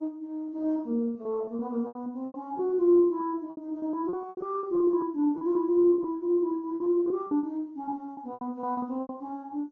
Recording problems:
lossy compression; MP2, then Opus, log-spectral distance 2 dB
lost packets; 14% of the sound replaced, filled with repeated pitch periods

